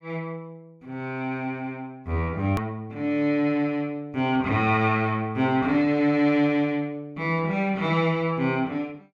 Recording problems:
click at an edit; at 2.5 s

